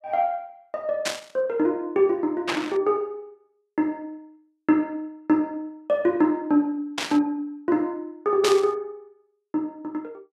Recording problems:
burst of static; 4 times, first at 1 s; peak +3 dB vs average level

